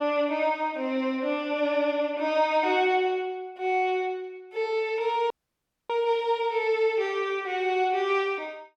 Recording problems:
dropout; at 5.5 s for 0.5 s

